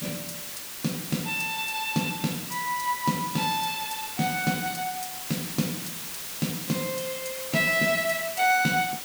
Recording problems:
background hiss; slope +1 dB per octave, SNR 6 dB

